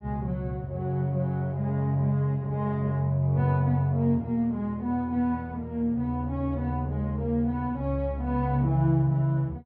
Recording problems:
low-pass filter; nothing above 5.3 kHz

